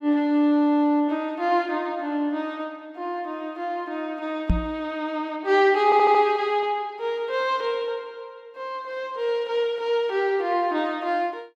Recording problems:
knock on the microphone; at 4.5 s; peak +6 dB vs average level
audio stuttering; at 6 s

